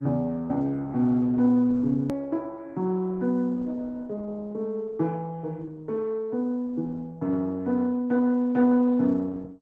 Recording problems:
lossy compression; MP2, then Opus, log-spectral distance 2 dB, nothing above 13.1 kHz
edit click; at 2 s

